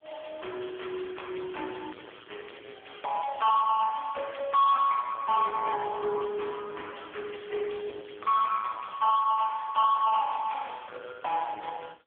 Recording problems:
telephone audio; 260 Hz to 3.4 kHz, AMR-NB
distorted audio; soft clipping, signal-to-distortion ratio 9 dB

